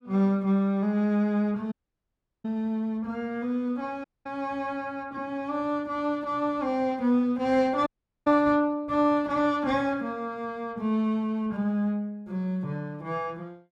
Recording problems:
dropout; at 1.5 s for 0.5 s, at 4 s and at 8 s

